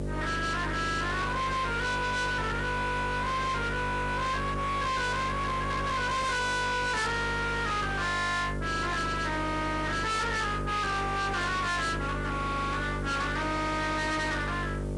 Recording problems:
lossy codec; Vorbis, log-spectral distance 3 dB, nothing above 10.4 kHz
distortion; hard clipping, signal-to-distortion ratio 7 dB
hum; 50 Hz, harmonics up to 1.6 kHz, SNR 5 dB
background hiss; slope -2 dB per octave, SNR 26 dB
static burst; at 5.5 s and at 11 s; peak -14 dB vs average level

